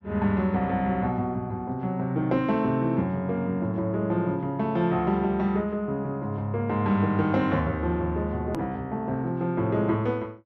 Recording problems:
edit click; at 8.5 s

